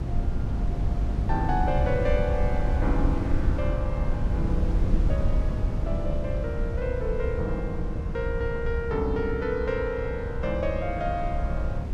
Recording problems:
low-frequency rumble; below 68 Hz, strongest tone 60 Hz, SNR 6 dB
wind noise; below 110 Hz, SNR -1 dB

